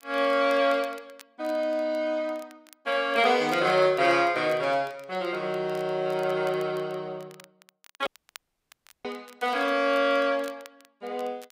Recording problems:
crackle; vinyl, SNR 27 dB
audio cutting out; at 8 s for 1 s

